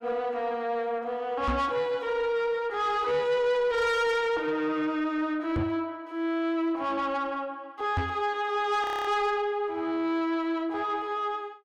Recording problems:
distortion; soft clipping, signal-to-distortion ratio 10 dB
microphone thump; at 1.5 s, at 5.5 s and at 8 s; peak +3 dB vs average level
audio freezing; at 9 s

